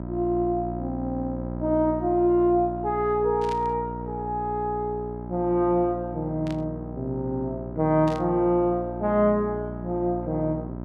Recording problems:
hum; 60 Hz, harmonics up to 1.3 kHz, SNR 9 dB
burst of static; at 3.5 s, at 6.5 s and at 8 s; peak -11 dB vs average level

